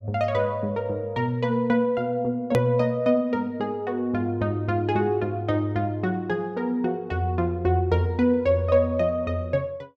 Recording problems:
click at an edit; at 2.5 s

